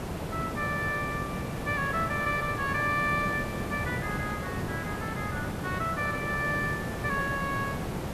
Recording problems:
background hiss; slope -7 dB per octave, SNR 3 dB

